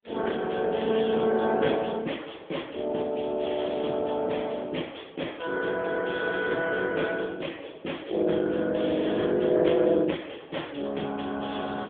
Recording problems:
phone line; 260 Hz to 3.4 kHz, AMR-NB

